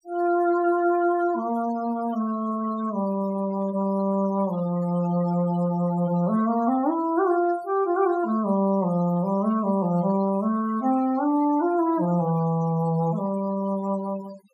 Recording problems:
noise reduction artefacts; signal-to-artefact ratio 19 dB

